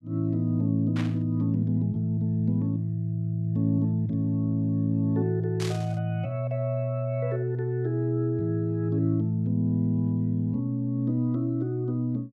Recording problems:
burst of static; at 1 s and at 5.5 s; peak -6 dB vs average level

